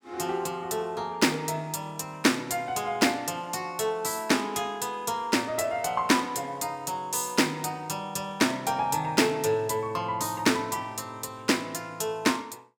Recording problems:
none

